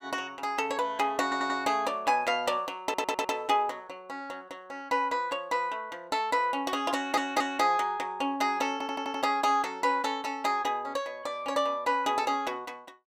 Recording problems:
stutter; 4 times, first at 1 s

